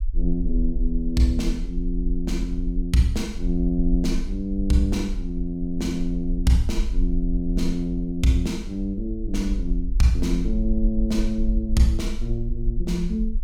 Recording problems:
low-frequency rumble; below 44 Hz, SNR 4 dB

